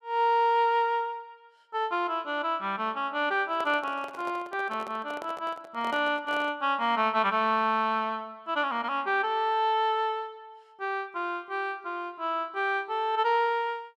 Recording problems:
handling noise; from 3.5 to 6.5 s; peak -8 dB vs average level

